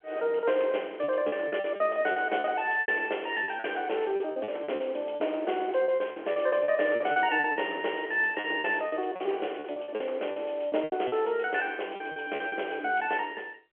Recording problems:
telephone audio; 320 Hz to 3.3 kHz, G.711
lost packets; 13% of the sound replaced, filled with repeated pitch periods

